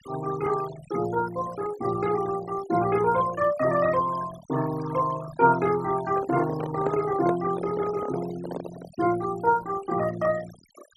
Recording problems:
denoising artefacts; signal-to-artefact ratio 16 dB
microphone handling noise; from 6 to 9 s; peak 0 dB vs average level

